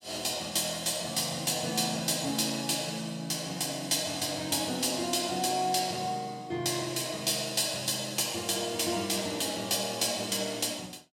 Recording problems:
none

